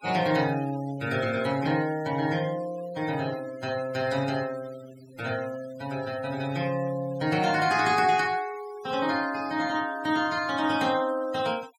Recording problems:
denoising artefacts; signal-to-artefact ratio 17 dB

